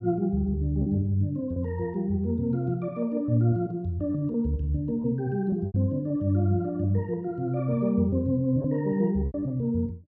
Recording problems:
packet loss; 5% of the sound replaced, filled with repeated pitch periods

